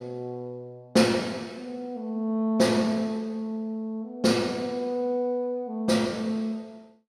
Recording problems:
none

